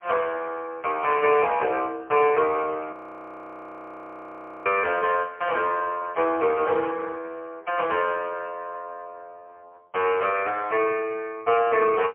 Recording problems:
phone line; 260 Hz to 3.9 kHz, AMR-NB, then MP3
frozen audio; at 3 s for 1.5 s

